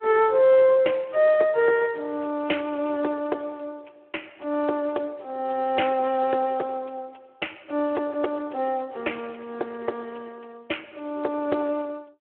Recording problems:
telephone audio; 320 Hz to 3.3 kHz, Speex

